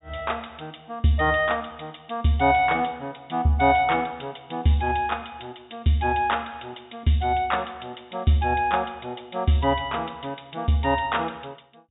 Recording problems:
treble cut off; nothing above 4 kHz

